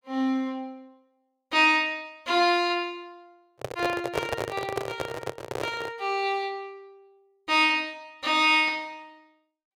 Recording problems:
microphone handling noise; from 3.5 to 6 s; peak +1 dB vs average level

